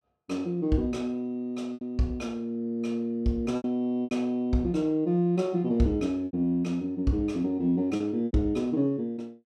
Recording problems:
lost packets; 5% of the sound replaced, filled with repeated pitch periods

